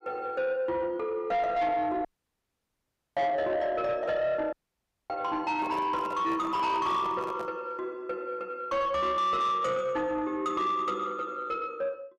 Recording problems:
distortion; soft clipping, signal-to-distortion ratio 11 dB
dropout; at 2 s for 1 s and at 4.5 s for 0.5 s
handling noise; from 5.5 to 7.5 s; peak -7 dB vs average level

